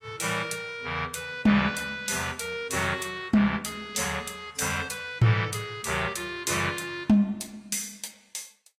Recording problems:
codec artefacts; AAC, log-spectral distance 4 dB, nothing above 14.7 kHz

